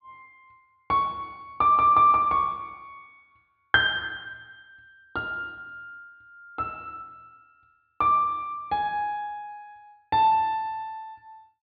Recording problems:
treble missing; nothing above 4.7 kHz

